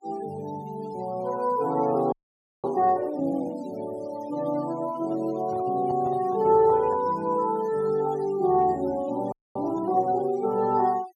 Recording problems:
noise reduction artefacts; signal-to-artefact ratio 22 dB
frozen audio; at 2 s for 0.5 s and at 9.5 s
handling noise; from 5.5 to 7 s; peak -10 dB vs average level

